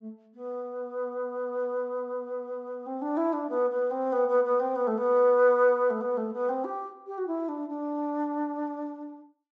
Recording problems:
treble cut off; nothing above 8 kHz

